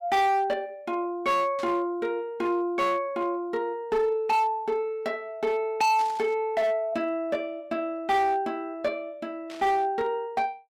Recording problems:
distorted audio; hard clipping, signal-to-distortion ratio 7 dB
static burst; at 1.5 s, at 6 s and at 9.5 s; peak -11 dB vs average level

